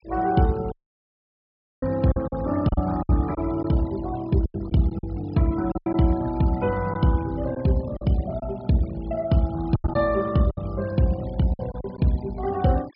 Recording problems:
low-pass filter; nothing above 5.5 kHz
denoising artefacts; signal-to-artefact ratio 21 dB
packet loss; 8% of the sound replaced, filled with silence
audio cutting out; at 0.5 s for 1 s

